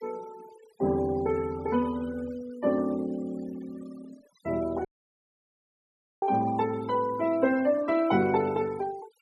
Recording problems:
denoising artefacts; signal-to-artefact ratio 21 dB
dropout; at 5 s for 1.5 s

